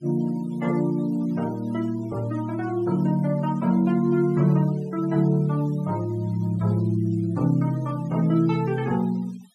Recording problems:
noise reduction artefacts; signal-to-artefact ratio 25 dB

